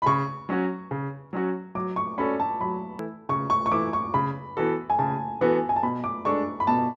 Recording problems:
hard cut with a click; at 3 s

